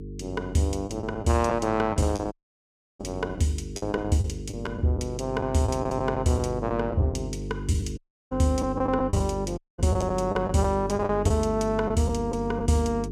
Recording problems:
electrical hum; 50 Hz, harmonics up to 450 Hz, SNR 9 dB
lost packets; 7% of the sound replaced, filled with the last packet
dropout; at 2.5 s for 0.5 s, at 8 s and at 9.5 s

